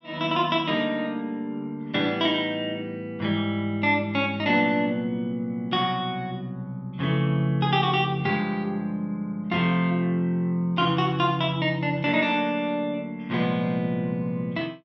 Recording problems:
none

